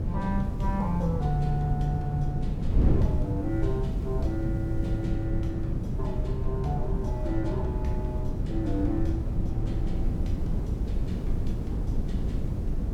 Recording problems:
mains hum; 60 Hz, harmonics up to 600 Hz, SNR 27 dB
hiss; slope 0 dB per octave, SNR 29 dB
wind noise; below 130 Hz, SNR -2 dB

